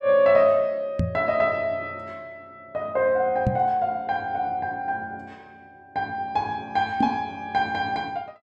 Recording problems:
microphone thump; at 1 s, at 3.5 s and at 7 s; peak +4 dB vs average level

